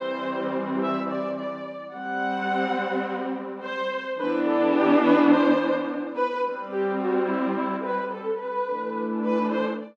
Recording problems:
none

